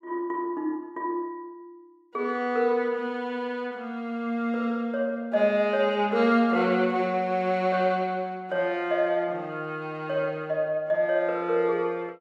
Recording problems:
none

